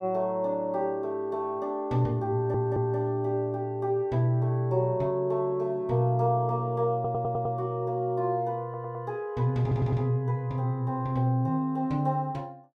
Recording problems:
stutter; 4 times, first at 2.5 s

